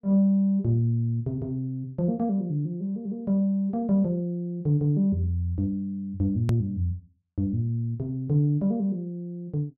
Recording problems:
treble cut off; nothing above 8 kHz
hard cut with a click; at 6.5 s

